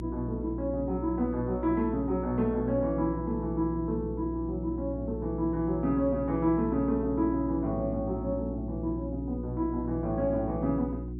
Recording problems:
electrical hum; 60 Hz, harmonics up to 360 Hz, SNR 7 dB

